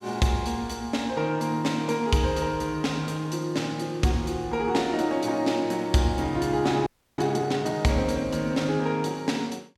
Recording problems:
audio freezing; at 7 s

